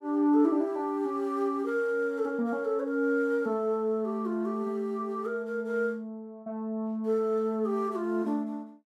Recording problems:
none

